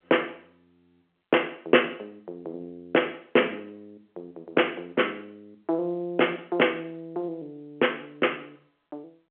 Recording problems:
phone line; 300 Hz to 3.2 kHz, G.711

